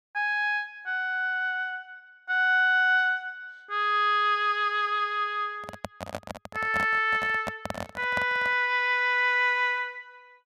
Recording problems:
microphone handling noise; from 5.5 to 8.5 s; peak -4 dB vs average level

